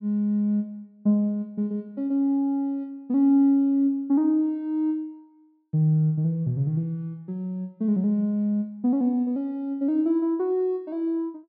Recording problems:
low-pass filter; nothing above 5.2 kHz

